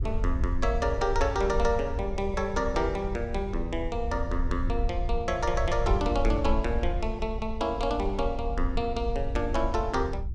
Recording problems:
rumble; below 66 Hz, SNR 4 dB

